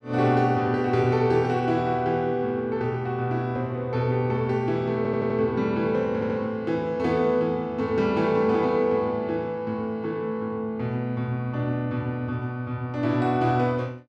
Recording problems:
audio stuttering; at 5 s and at 6 s

